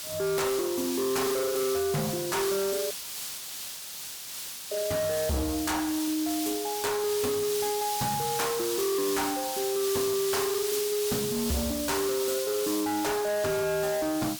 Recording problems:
distorted audio; hard clipping, signal-to-distortion ratio 8 dB
hiss; slope +2 dB per octave, SNR 4 dB
dropout; at 3 s for 2 s

